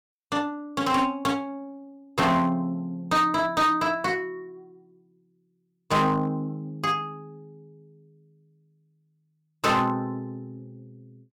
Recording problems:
distortion; hard clipping, signal-to-distortion ratio 11 dB

